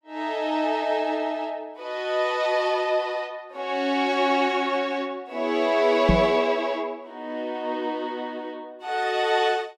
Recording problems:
microphone thump; at 6 s; peak +8 dB vs average level

